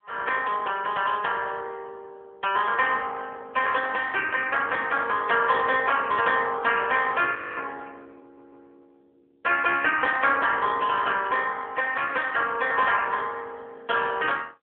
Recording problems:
telephone audio; 320 Hz to 2.9 kHz, AMR-NB
frozen audio; at 7.5 s
stutter; at 8 s

